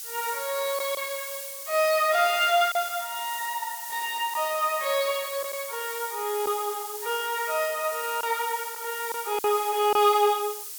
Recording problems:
background hiss; slope +5 dB per octave, SNR 8 dB
lost packets; 2% of the sound replaced, filled with silence

